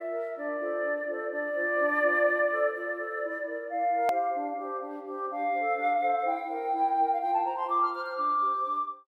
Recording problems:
hard cut with a click; at 4 s

